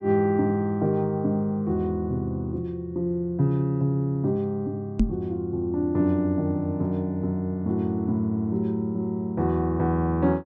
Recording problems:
knock on the microphone; at 5 s; peak +7 dB vs average level

